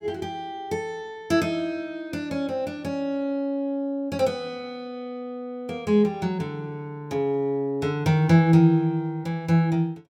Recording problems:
none

